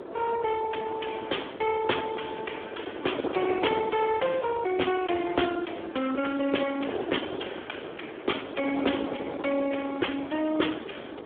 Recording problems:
telephone audio; 240 Hz to 3.4 kHz, Speex
wind noise; below 670 Hz, SNR 8 dB

